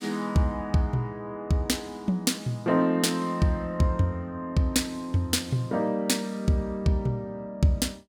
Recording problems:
none

